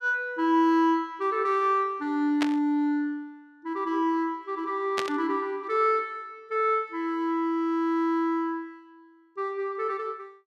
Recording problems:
static burst; at 2.5 s and at 5 s; peak +1 dB vs average level

